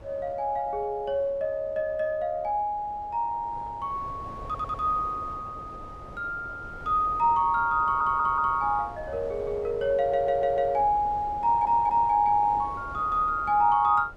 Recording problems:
wind noise; below 640 Hz, SNR 19 dB
stutter; 4 times, first at 4.5 s

